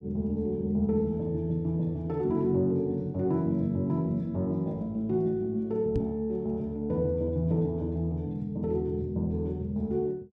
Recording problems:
knock on the microphone; at 6 s; peak +3 dB vs average level

